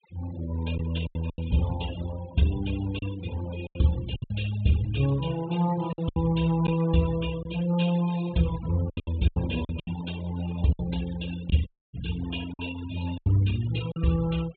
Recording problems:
low-pass filter; nothing above 4 kHz
noise reduction artefacts; signal-to-artefact ratio 15 dB
lost packets; 8% of the sound replaced, filled with silence
audio cutting out; at 12 s

